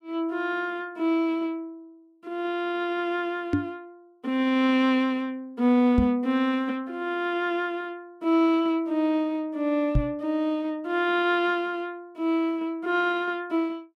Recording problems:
microphone bump; at 3.5 s, at 6 s and at 10 s; peak +6 dB vs average level

